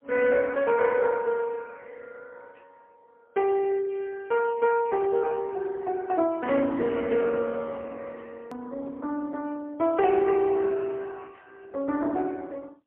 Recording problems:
phone line; 260 Hz to 2.8 kHz, AMR-NB, then MP3
click at an edit; at 8.5 s

